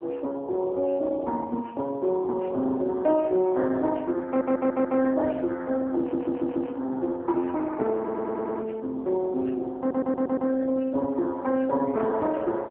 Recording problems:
telephone audio; 240 Hz to 2.6 kHz, AMR-NB
audio stuttering; 4 times, first at 4.5 s

